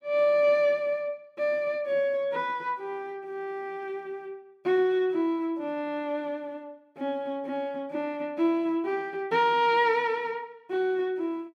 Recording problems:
none

